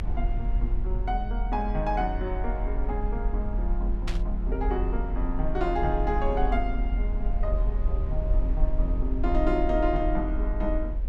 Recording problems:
hum; 60 Hz, harmonics up to 540 Hz, SNR 21 dB
low-frequency rumble; below 44 Hz, strongest tone 42 Hz, SNR -1 dB
static burst; at 4 s; peak -1 dB vs average level

